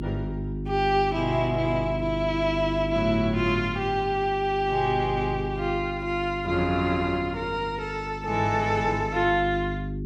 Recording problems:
electrical hum; 50 Hz, harmonics up to 400 Hz, SNR 8 dB

